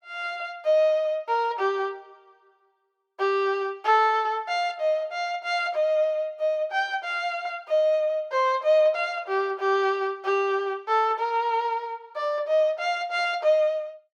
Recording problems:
none

